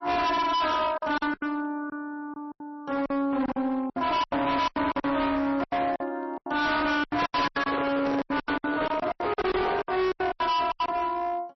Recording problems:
lossy codec; MP3, log-spectral distance 2 dB, nothing above 5.7 kHz
distorted audio; hard clipping, uneven, signal-to-distortion ratio 6 dB
packet loss; 16% of the sound replaced, filled with silence
microphone handling noise; from 7 to 10 s; peak 0 dB vs average level

